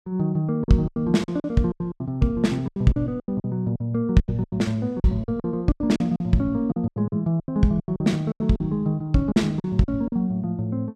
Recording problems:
lost packets; 16% of the sound replaced, filled with silence

